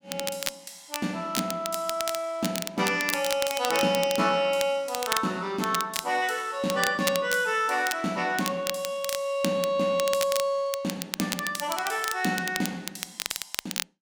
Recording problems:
crackle; vinyl, SNR 7 dB

